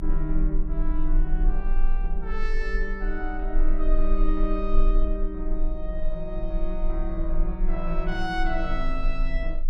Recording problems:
rumble; below 32 Hz, strongest tone 20 Hz, SNR -3 dB

